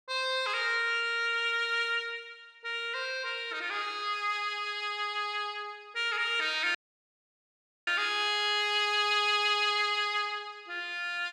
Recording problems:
audio cutting out; at 7 s for 1 s

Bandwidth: 14.5 kHz